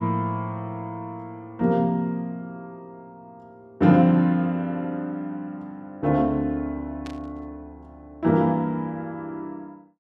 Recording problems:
static burst; at 7 s; peak -13 dB vs average level

